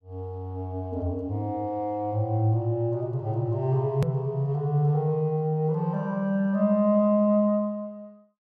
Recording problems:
click at an edit; at 4 s

